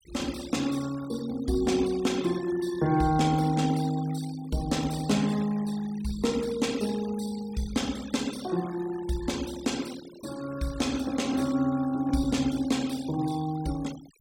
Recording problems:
denoising artefacts; signal-to-artefact ratio 17 dB

